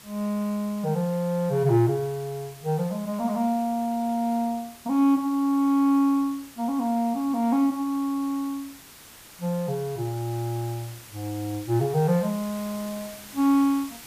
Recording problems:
background hiss; slope -1 dB per octave, SNR 19 dB

